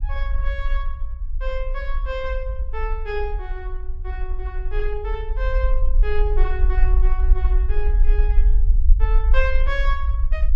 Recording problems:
rumble; below 46 Hz, SNR -7 dB

